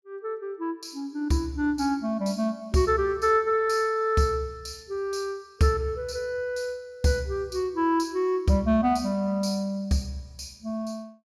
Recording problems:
none

